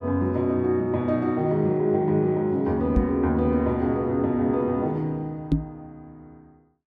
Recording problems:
microphone thump; at 3 s and at 5.5 s; peak +6 dB vs average level

